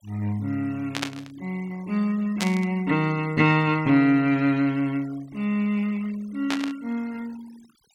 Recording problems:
noise reduction artefacts; signal-to-artefact ratio 24 dB
burst of static; at 1 s, at 2.5 s and at 6.5 s; peak +1 dB vs average level

